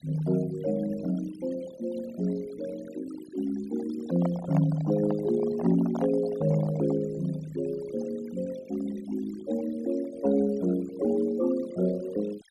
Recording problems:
noise reduction artefacts; signal-to-artefact ratio 18 dB
microphone handling noise; from 4 to 7 s; peak -3 dB vs average level

